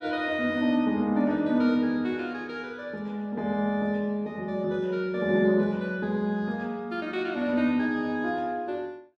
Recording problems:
none

